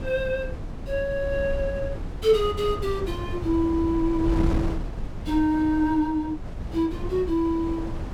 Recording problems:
wind noise; below 180 Hz, SNR 7 dB

